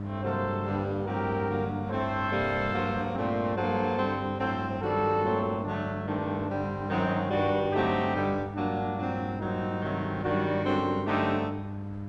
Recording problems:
hum; 50 Hz, harmonics up to 1 kHz, SNR 7 dB
wind on the microphone; below 870 Hz, SNR 20 dB

